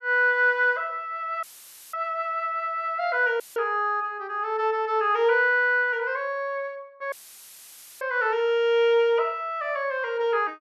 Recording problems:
dropout; at 1.5 s for 0.5 s, at 3.5 s and at 7 s for 1 s; filled with static

